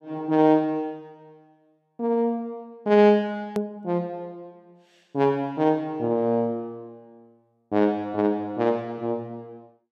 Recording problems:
click at an edit; at 3.5 s

